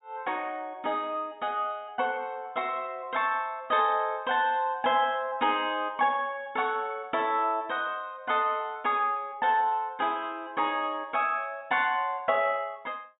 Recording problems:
treble cut off; nothing above 4 kHz

